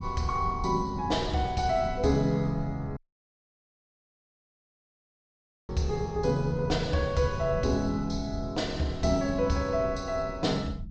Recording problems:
low-pass filter; nothing above 8 kHz
rumble; below 130 Hz, SNR 11 dB
audio cutting out; at 3 s for 2.5 s

